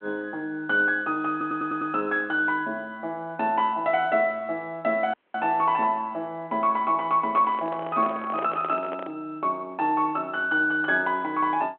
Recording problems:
telephone audio; 240 Hz to 3.3 kHz, G.726
audio stuttering; at 1.5 s
audio cutting out; at 5 s
handling noise; from 7.5 to 9 s; peak -5 dB vs average level

